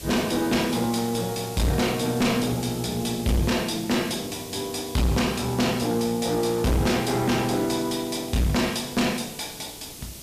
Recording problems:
distortion; hard clipping, uneven, signal-to-distortion ratio 6 dB
hiss; SNR 13 dB

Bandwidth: 14.5 kHz